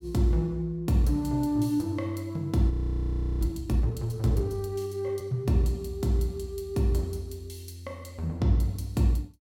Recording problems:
audio freezing; at 2.5 s for 0.5 s

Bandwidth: 16.5 kHz